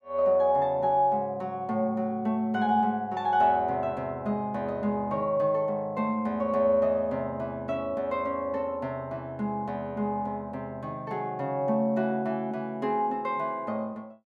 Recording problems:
none

